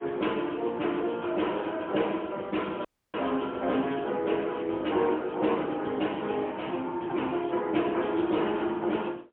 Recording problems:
phone line; 240 Hz to 3.3 kHz, AMR-NB, then MP3
audio cutting out; at 3 s

